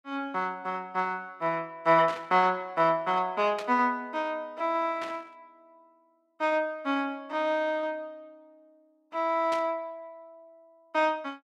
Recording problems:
burst of static; 4 times, first at 2 s; peak -7 dB vs average level

